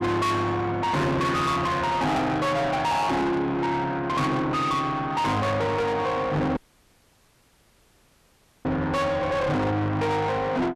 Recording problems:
distortion; soft clipping, signal-to-distortion ratio 7 dB
audio cutting out; at 6.5 s for 2 s

